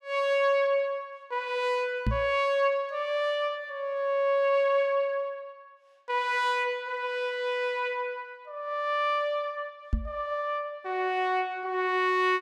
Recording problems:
microphone bump; at 2 s and at 10 s; peak +4 dB vs average level

